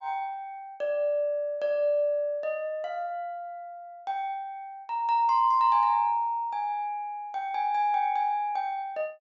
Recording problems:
treble missing; nothing above 7.4 kHz

